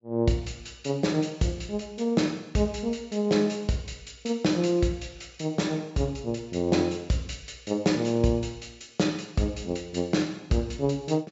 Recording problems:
low-pass filter; nothing above 8 kHz

